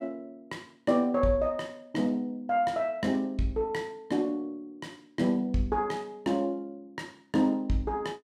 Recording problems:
none

